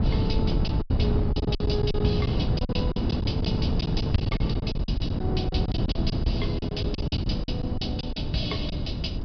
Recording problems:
low-pass filter; nothing above 5.5 kHz
wind noise; below 210 Hz, SNR -6 dB
lost packets; 13% of the sound replaced, filled with silence

